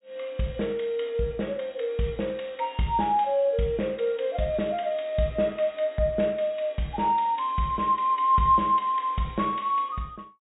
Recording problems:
treble missing; nothing above 4 kHz

